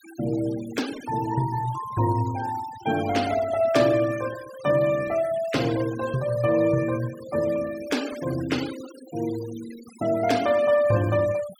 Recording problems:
denoising artefacts; signal-to-artefact ratio 16 dB

